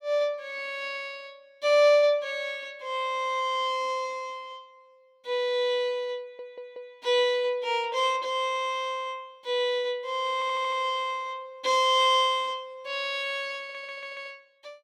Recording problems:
stutter; at 6 s, at 10 s and at 14 s

